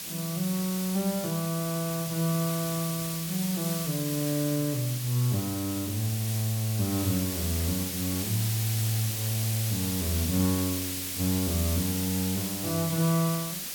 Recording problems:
hiss; SNR 3 dB

